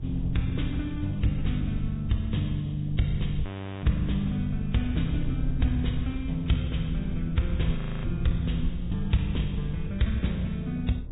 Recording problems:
treble cut off; nothing above 3.8 kHz
lossy compression; Vorbis, log-spectral distance 2 dB
low-frequency rumble; below 88 Hz, SNR 8 dB
wind on the microphone; below 260 Hz, SNR 23 dB
frozen audio; at 3.5 s and at 8 s

